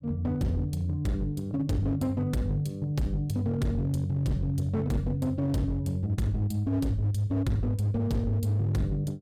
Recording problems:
distortion; hard clipping, signal-to-distortion ratio 12 dB

